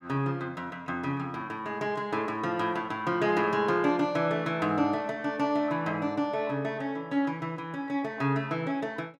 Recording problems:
none

